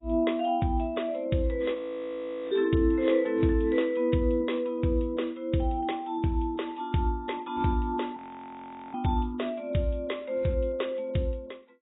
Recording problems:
lossy compression; AAC, log-spectral distance 3 dB, nothing above 3.8 kHz
frozen audio; at 2 s for 1 s and at 8 s for 1 s

